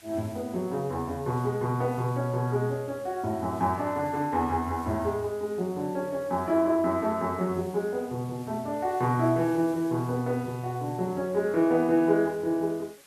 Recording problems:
hiss; slope 0 dB per octave, SNR 24 dB

